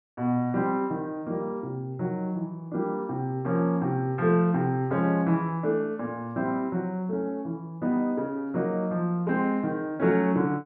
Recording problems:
none

